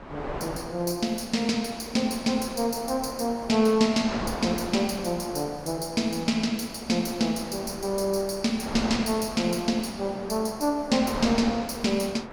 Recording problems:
wind noise; below 1.1 kHz, SNR 11 dB

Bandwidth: 18.5 kHz